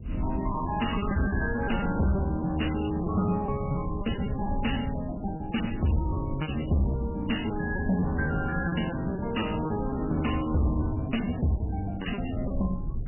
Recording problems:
lossy codec; MP3, log-spectral distance 6 dB, nothing above 2.9 kHz
distortion; hard clipping, signal-to-distortion ratio 11 dB
low-frequency rumble; below 110 Hz, SNR 10 dB
packet loss; 13% of the sound replaced, filled with repeated pitch periods

